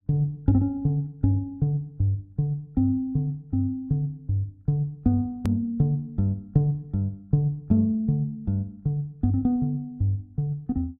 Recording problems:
edit click; at 5.5 s

